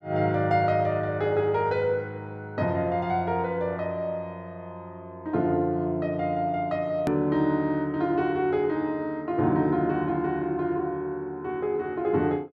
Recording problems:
click at an edit; at 7 s

